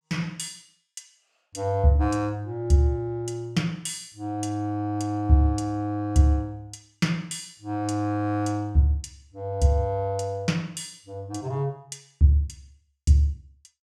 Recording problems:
none

